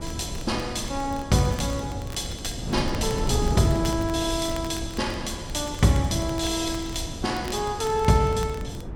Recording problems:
wind noise; below 250 Hz, SNR 7 dB
crackle; vinyl, SNR 20 dB

